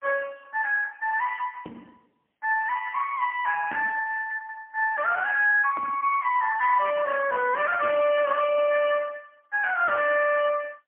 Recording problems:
telephone audio; 240 Hz to 2.9 kHz, AMR-NB, then MP3

